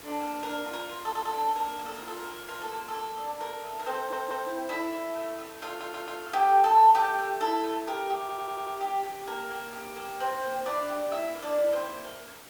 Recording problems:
background hiss; slope -3 dB per octave, SNR 16 dB
stutter; 4 times, first at 1 s

